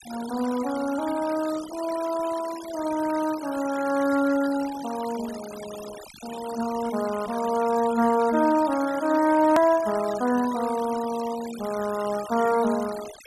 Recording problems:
noise reduction artefacts; signal-to-artefact ratio 16 dB
edit click; at 9.5 s

